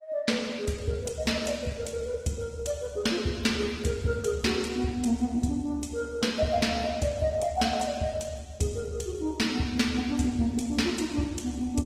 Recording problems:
lossy compression; Opus, log-spectral distance 4 dB

